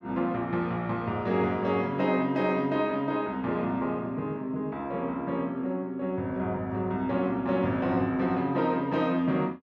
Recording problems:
none

